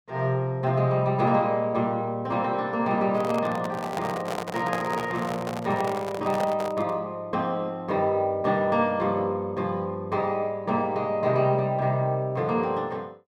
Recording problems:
handling noise; from 3 to 7 s; peak -1 dB vs average level

